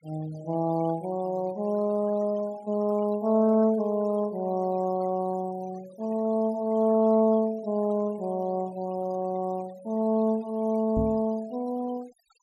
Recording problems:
noise reduction artefacts; signal-to-artefact ratio 24 dB
knock on the microphone; at 11 s; peak 0 dB vs average level

